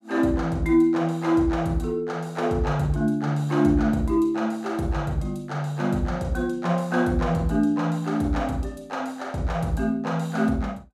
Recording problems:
none

